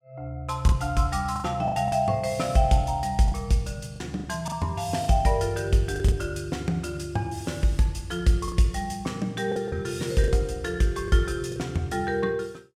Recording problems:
packet loss; 6% of the sound replaced, filled with the last packet

